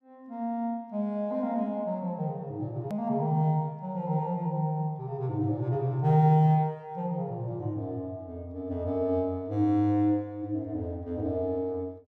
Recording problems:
edit click; at 3 s

